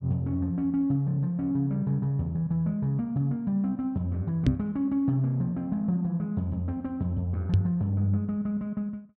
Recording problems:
knock on the microphone; at 4.5 s and at 7.5 s; peak +9 dB vs average level

